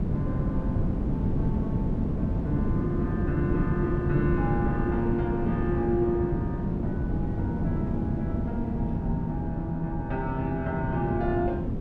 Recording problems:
wind noise; below 240 Hz, SNR -2 dB

